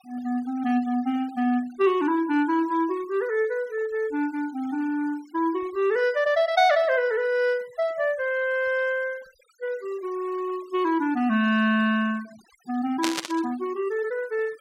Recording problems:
noise reduction artefacts; signal-to-artefact ratio 24 dB
burst of static; at 13 s; peak +2 dB vs average level

